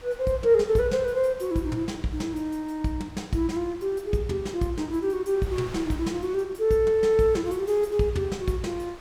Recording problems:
wind on the microphone; below 1.9 kHz, SNR 21 dB

